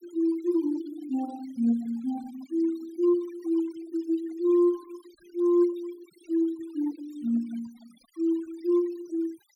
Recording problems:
noise reduction artefacts; signal-to-artefact ratio 24 dB

